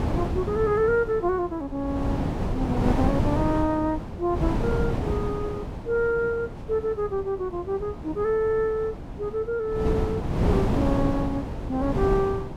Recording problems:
wind noise; below 370 Hz, SNR 2 dB

